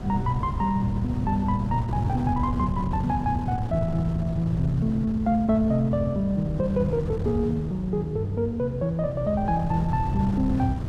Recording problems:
wind noise; below 160 Hz, SNR 6 dB

